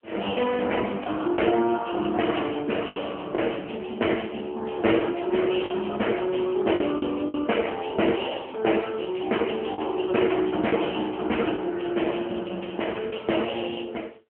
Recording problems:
phone line; 220 Hz to 3.2 kHz, AMR-NB
lost packets; 3% of the sound replaced, filled with the last packet

